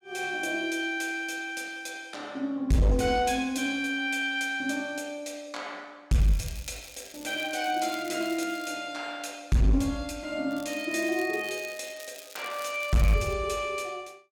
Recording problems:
distorted audio; hard clipping, signal-to-distortion ratio 11 dB
crackle; from 6 to 8.5 s and from 11 to 13 s; loose cable, SNR 17 dB

